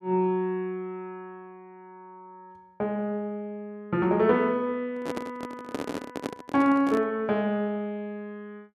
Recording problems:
handling noise; from 5 to 7 s; peak -1 dB vs average level

